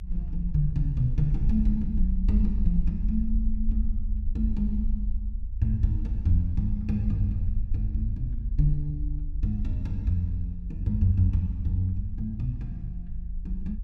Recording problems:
low-frequency rumble; below 50 Hz, SNR 4 dB

